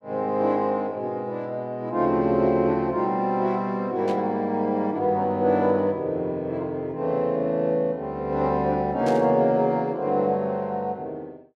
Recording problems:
static burst; at 4 s and at 9 s; peak -12 dB vs average level

